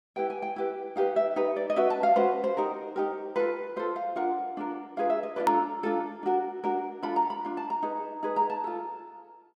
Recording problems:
hard cut with a click; at 5.5 s

